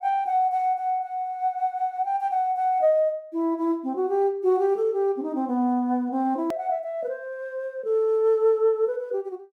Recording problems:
hard cut with a click; at 6.5 s

